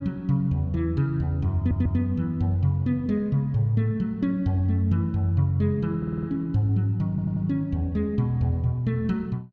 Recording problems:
stutter; at 1.5 s, at 6 s and at 7 s

